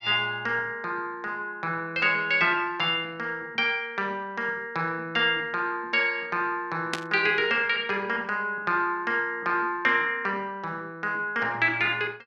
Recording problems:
static burst; at 7 s; peak +1 dB vs average level

